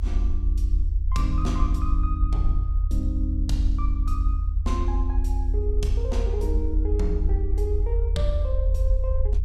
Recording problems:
low-frequency rumble; below 74 Hz, strongest tone 44 Hz, SNR -7 dB

